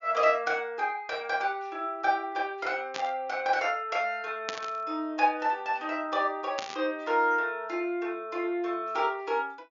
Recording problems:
treble missing; nothing above 7.1 kHz
static burst; at 3 s, at 4.5 s and at 6.5 s; peak 0 dB vs average level

